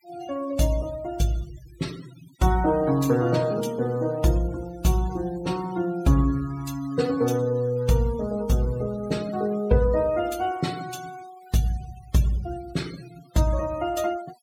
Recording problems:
denoising artefacts; signal-to-artefact ratio 19 dB

